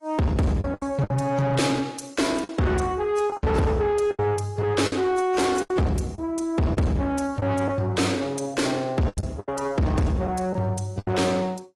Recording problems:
codec artefacts; AAC, log-spectral distance 3 dB, nothing above 11 kHz
distortion; soft clipping, signal-to-distortion ratio 6 dB
packet loss; 8% of the sound replaced, filled with the last packet

